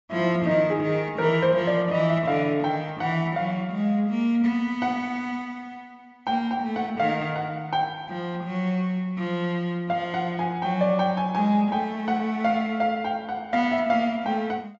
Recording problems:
treble cut off; nothing above 7.5 kHz

